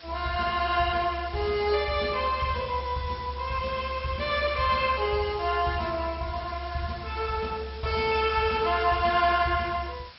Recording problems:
lossy codec; MP2, log-spectral distance 11 dB, nothing above 4.9 kHz
background hiss; slope +1 dB per octave, SNR 19 dB

